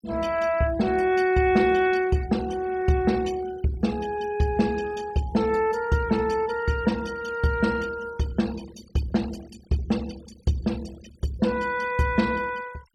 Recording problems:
denoising artefacts; signal-to-artefact ratio 21 dB

